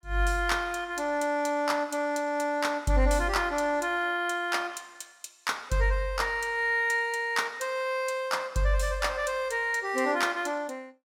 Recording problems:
none

